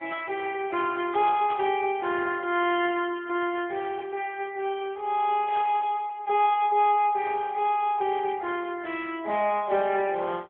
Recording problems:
phone line; 240 Hz to 3.3 kHz, AMR-NB
burst of static; at 1.5 s and at 5.5 s; peak -8 dB vs average level

